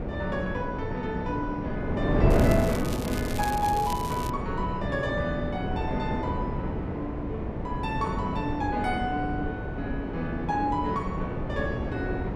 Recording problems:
wind on the microphone; below 420 Hz, SNR -1 dB
crackle; from 2.5 to 4.5 s; loose cable, SNR 9 dB

